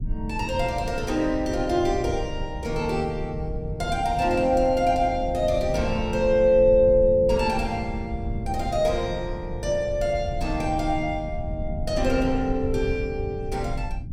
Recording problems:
low-frequency rumble; below 110 Hz, SNR 9 dB

